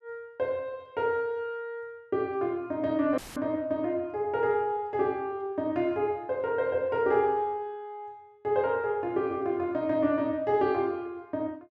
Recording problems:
dropout; at 3 s; filled with static

